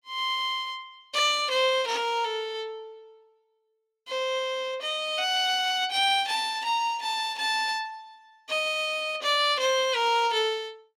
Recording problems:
none

